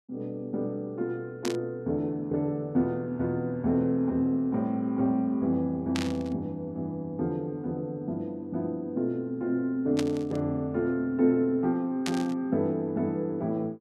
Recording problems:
burst of static; 4 times, first at 1.5 s; peak 0 dB vs average level

